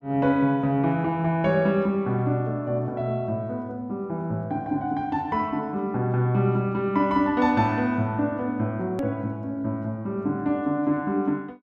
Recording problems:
click at an edit; at 9 s

